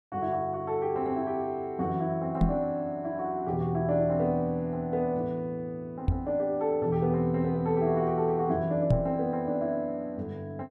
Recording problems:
microphone bump; at 2.5 s, at 6 s and at 9 s; peak +7 dB vs average level

